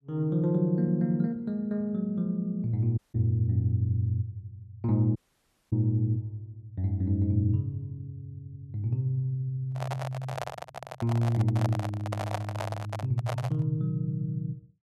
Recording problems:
dropout; at 3 s and at 5 s for 0.5 s
microphone handling noise; from 9.5 to 14 s; peak 0 dB vs average level

